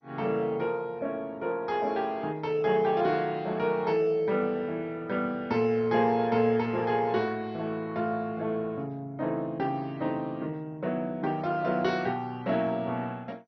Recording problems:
lossy compression; MP2, log-spectral distance 2 dB, nothing above 5 kHz

